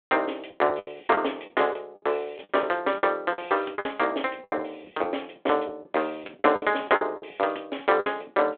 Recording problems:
phone line; 280 Hz to 3.6 kHz, G.726
packet loss; 11% of the sound replaced, filled with the last packet

